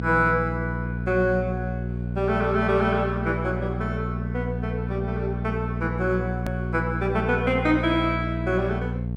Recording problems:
mains hum; 60 Hz, harmonics up to 660 Hz, SNR 3 dB
edit click; at 6.5 s

